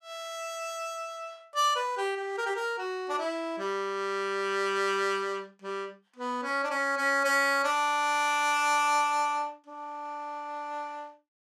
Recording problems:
none

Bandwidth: 15.5 kHz